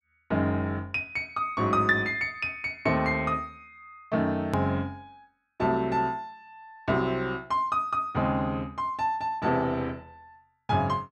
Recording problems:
click at an edit; at 4.5 s

